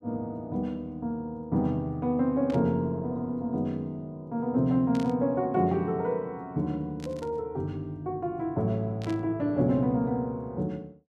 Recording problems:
burst of static; 4 times, first at 2.5 s; peak -11 dB vs average level

